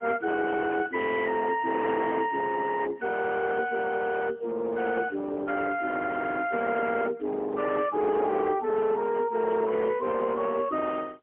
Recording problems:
phone line; 280 Hz to 3.7 kHz, AMR-NB, then MP3
distorted audio; hard clipping, signal-to-distortion ratio 13 dB

